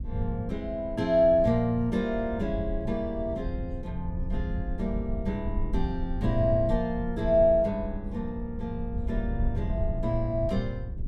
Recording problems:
low-frequency rumble; below 84 Hz, SNR 7 dB

